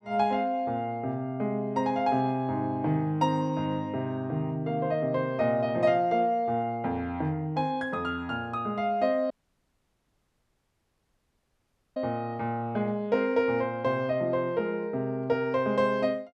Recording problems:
dropout; at 9.5 s for 2.5 s

